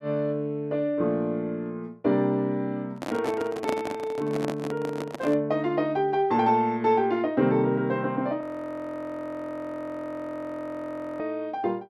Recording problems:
handling noise; from 3 to 5.5 s; peak +1 dB vs average level
frozen audio; at 8.5 s for 3 s

